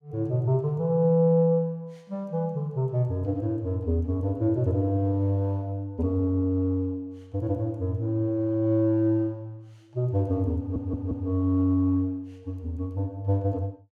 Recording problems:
stutter; at 11 s

